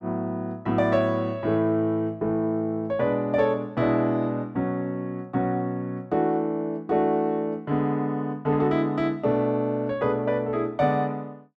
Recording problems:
none

